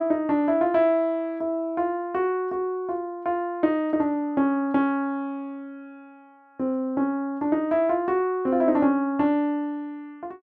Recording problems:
none

